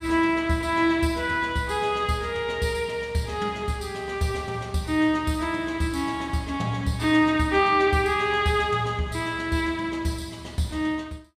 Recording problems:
none

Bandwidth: 14.5 kHz